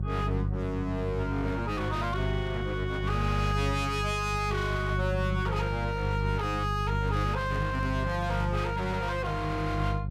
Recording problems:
distortion; hard clipping, signal-to-distortion ratio 7 dB
electrical hum; 50 Hz, harmonics up to 350 Hz, SNR 1 dB
handling noise; from 7 to 8.5 s; peak -9 dB vs average level

